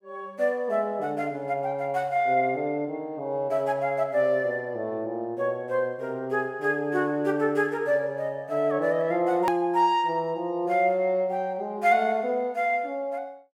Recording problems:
click at an edit; at 9.5 s

